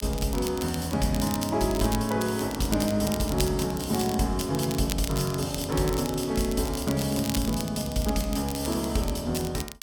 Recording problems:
crackling; vinyl, SNR 11 dB

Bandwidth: 18 kHz